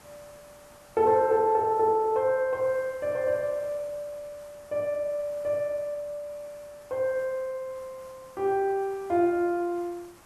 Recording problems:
background hiss; SNR 26 dB

